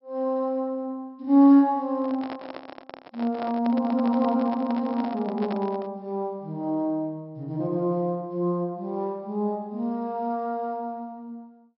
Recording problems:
low-pass filter; nothing above 5.4 kHz
microphone handling noise; from 2 to 6 s; peak -6 dB vs average level

